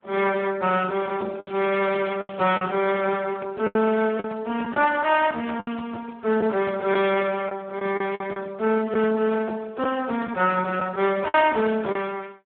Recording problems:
telephone audio; 280 Hz to 2.8 kHz, Speex
lost packets; 6% of the sound replaced, filled with the last packet
crackle; from 1.5 to 2.5 s; loose cable, SNR 21 dB

